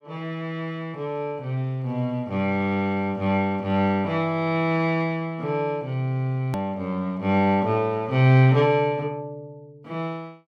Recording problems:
click at an edit; at 6.5 s

